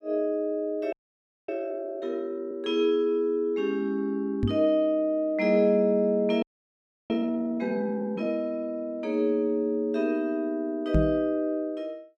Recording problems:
frozen audio; at 1 s for 0.5 s and at 6.5 s for 0.5 s
microphone thump; at 4.5 s and at 11 s; peak +6 dB vs average level

